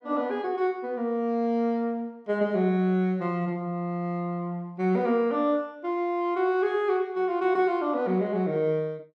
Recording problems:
none

